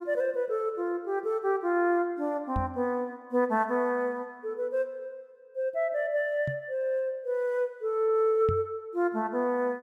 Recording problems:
microphone thump; at 2.5 s, at 6.5 s and at 8.5 s; peak +1 dB vs average level

